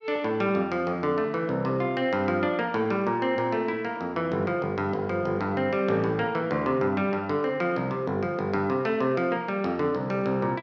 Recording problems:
none

